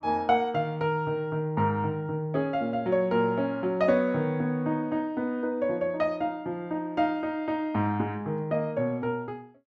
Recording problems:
none

